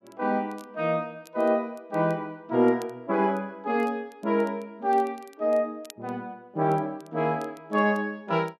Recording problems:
crackle; vinyl, SNR 29 dB

